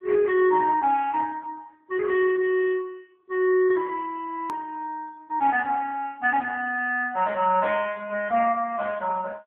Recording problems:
phone line; 280 Hz to 3.3 kHz, AMR-NB
hard cut with a click; at 4.5 s

